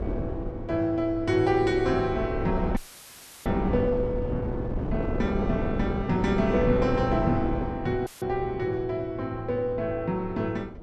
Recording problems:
wind noise; below 360 Hz, SNR 6 dB
audio cutting out; at 3 s for 0.5 s and at 8 s

